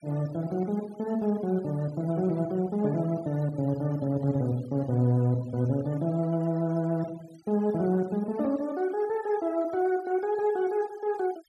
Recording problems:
noise reduction artefacts; signal-to-artefact ratio 24 dB

